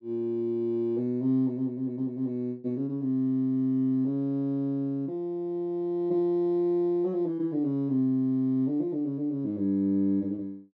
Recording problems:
none

